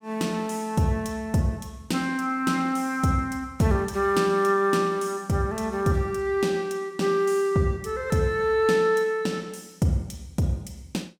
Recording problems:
none

